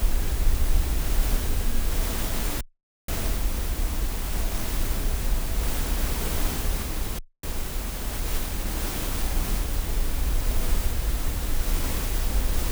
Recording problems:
background hiss; slope -3 dB per octave, SNR -13 dB
wind on the microphone; below 52 Hz, SNR -13 dB
audio cutting out; at 2.5 s and at 7 s

